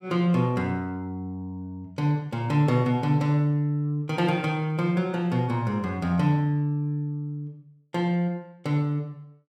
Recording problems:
none

